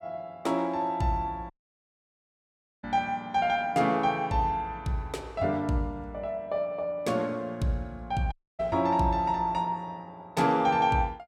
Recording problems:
dropout; at 1.5 s for 1.5 s and at 8.5 s

